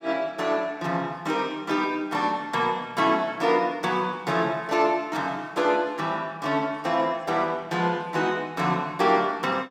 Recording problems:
none

